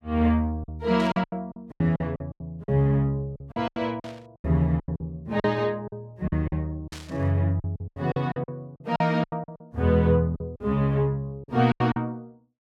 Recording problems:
packet loss; 15% of the sound replaced, filled with silence
static burst; at 1 s, at 4 s and at 7 s; peak -10 dB vs average level

